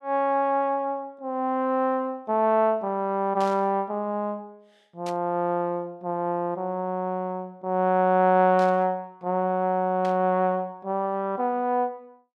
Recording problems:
static burst; 4 times, first at 3.5 s; peak -12 dB vs average level

